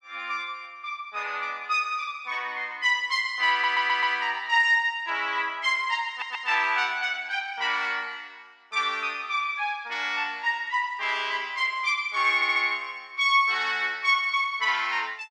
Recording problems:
audio stuttering; at 3.5 s, at 6 s and at 12 s

